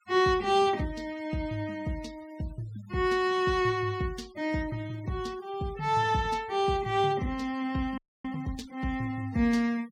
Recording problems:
noise reduction artefacts; signal-to-artefact ratio 23 dB
audio freezing; at 8 s

